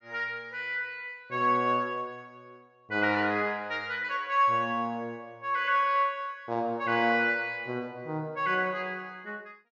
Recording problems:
treble cut off; nothing above 7.2 kHz

